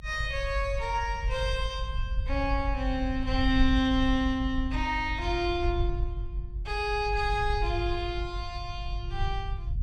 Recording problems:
low-frequency rumble; below 68 Hz, SNR 4 dB

